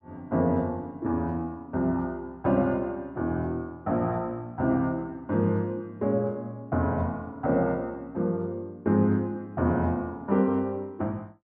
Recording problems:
none

